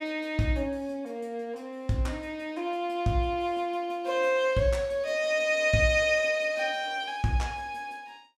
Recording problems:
none

